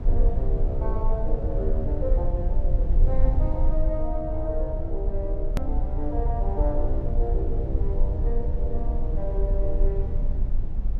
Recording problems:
low-frequency rumble; below 52 Hz, strongest tone 22 Hz, SNR -6 dB
click at an edit; at 5.5 s

